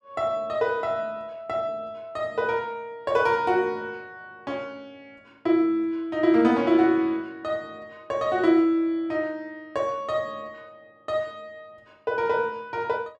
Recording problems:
none

